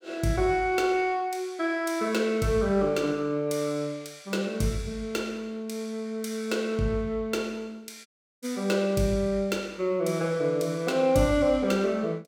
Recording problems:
audio cutting out; at 8 s

